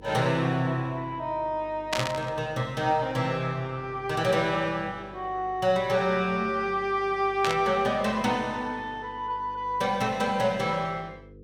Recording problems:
hum; 50 Hz, harmonics up to 500 Hz, SNR 22 dB
static burst; at 2 s and at 7.5 s; peak +4 dB vs average level

